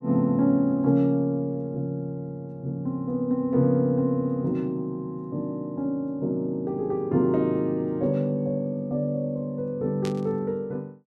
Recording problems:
static burst; at 10 s; peak -9 dB vs average level

